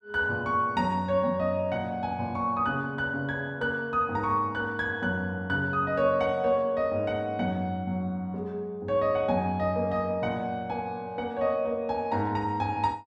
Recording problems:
none

